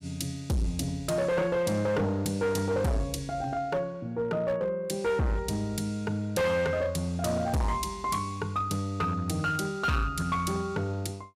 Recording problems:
distorted audio; hard clipping, signal-to-distortion ratio 7 dB

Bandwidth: 15.5 kHz